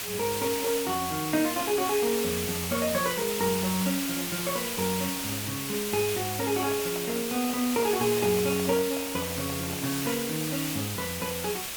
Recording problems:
hiss; slope 0 dB per octave, SNR 2 dB
handling noise; from 6.5 to 10 s; peak -7 dB vs average level

